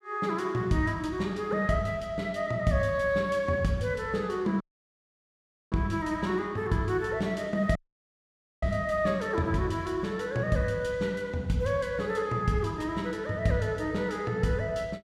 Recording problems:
dropout; at 4.5 s for 1 s and at 8 s for 1 s

